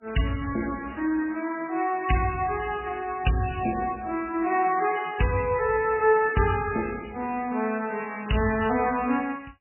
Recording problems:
codec artefacts; MP3, log-spectral distance 5 dB, nothing above 2.9 kHz

